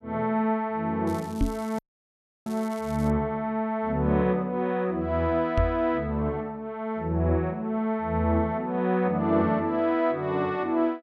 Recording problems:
crackle; from 1 to 3 s; loose cable, SNR 23 dB
knock on the microphone; at 1.5 s and at 5.5 s; peak +4 dB vs average level
dropout; at 2 s for 0.5 s

